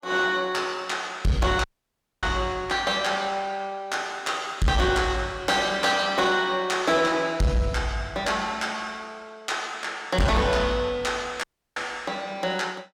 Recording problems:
distortion; soft clipping, signal-to-distortion ratio 11 dB
dropout; at 1.5 s for 0.5 s and at 11 s

